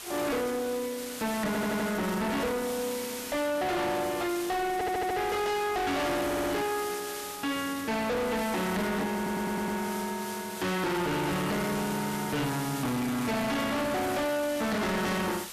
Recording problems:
distortion; hard clipping, uneven, signal-to-distortion ratio 5 dB
hiss; slope +1 dB per octave, SNR 10 dB
stutter; 4 times, first at 1.5 s

